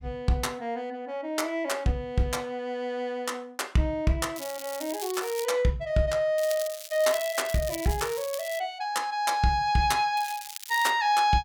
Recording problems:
crackling; from 4.5 to 5.5 s, from 6.5 to 8.5 s and at 10 s; loose cable, SNR 11 dB

